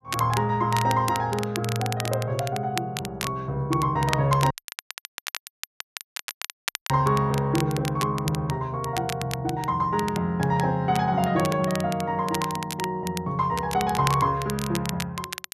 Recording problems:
crackle; vinyl, SNR 10 dB
audio cutting out; at 4.5 s for 2.5 s

